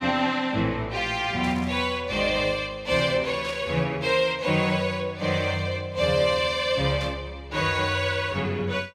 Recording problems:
burst of static; at 1.5 s, at 3.5 s and at 7 s; peak -11 dB vs average level

